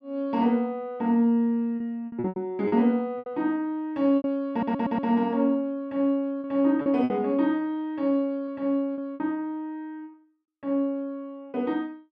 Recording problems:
lost packets; 7% of the sound replaced, filled with repeated pitch periods
stutter; at 4.5 s

